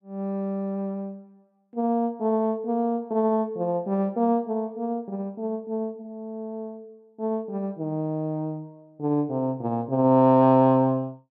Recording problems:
none

